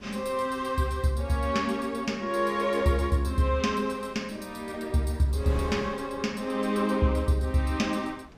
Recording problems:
wind on the microphone; below 600 Hz, SNR 19 dB

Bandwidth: 15 kHz